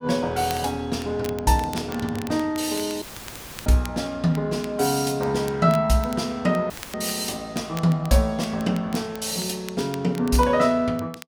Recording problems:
crackle; vinyl, SNR 19 dB
audio cutting out; at 3 s for 0.5 s and at 6.5 s; filled with static

